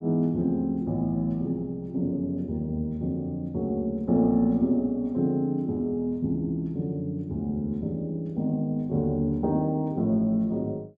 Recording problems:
none

